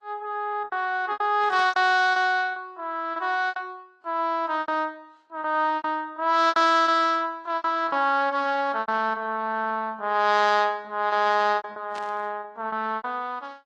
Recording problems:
lossy compression; Opus, then AAC, log-spectral distance 2 dB
lost packets; 10% of the sound replaced, filled with repeated pitch periods
static burst; at 1.5 s and at 12 s; peak -13 dB vs average level

